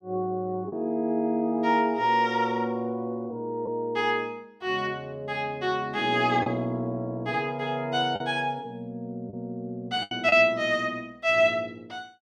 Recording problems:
packet loss; 2% of the sound replaced, filled with the last packet

